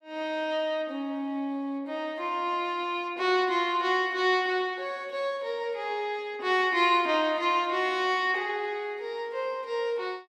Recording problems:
none

